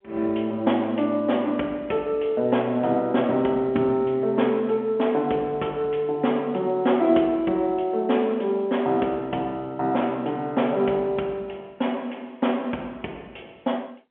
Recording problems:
phone line; 170 Hz to 3.4 kHz, G.711

